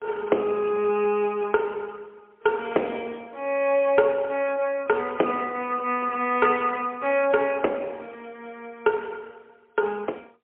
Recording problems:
telephone audio; 280 Hz to 3.3 kHz, AMR-NB, then MP3

